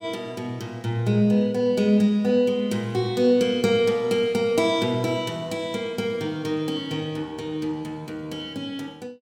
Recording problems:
none

